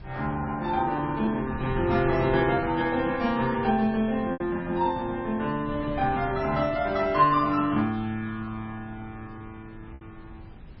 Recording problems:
lossy codec; MP3, log-spectral distance 2 dB, nothing above 4.9 kHz
wind on the microphone; below 180 Hz, SNR 16 dB
packet loss; 1.9% of the sound replaced, filled with repeated pitch periods

